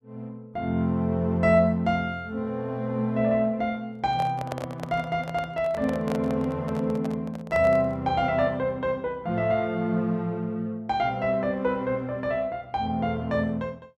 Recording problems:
handling noise; from 4 to 8 s; peak -3 dB vs average level

